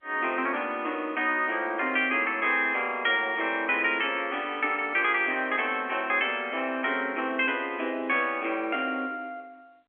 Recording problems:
phone line; 240 Hz to 3.3 kHz, G.711

